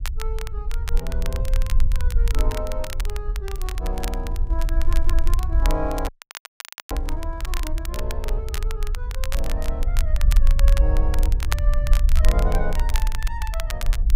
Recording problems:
rumble; below 50 Hz, SNR -9 dB
crackling; vinyl, SNR 3 dB
microphone handling noise; from 3.5 to 7.5 s; peak -7 dB vs average level
stutter; at 5 s
dropout; at 6 s for 1 s

